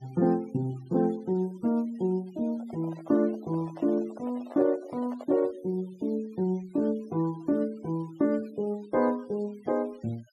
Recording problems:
noise reduction artefacts; signal-to-artefact ratio 25 dB
handling noise; from 2.5 to 5.5 s; peak -10 dB vs average level

